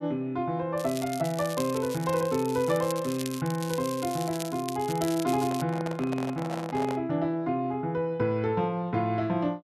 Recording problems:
crackle; from 1 to 5.5 s; loose cable, SNR 12 dB
microphone handling noise; from 5.5 to 7 s; peak -3 dB vs average level

